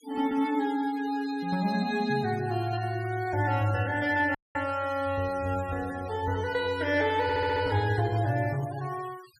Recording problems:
denoising artefacts; signal-to-artefact ratio 19 dB
audio cutting out; at 4.5 s
audio stuttering; at 7 s

